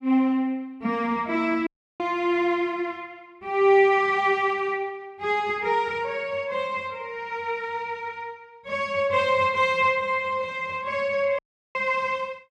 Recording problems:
audio cutting out; at 1.5 s and at 11 s

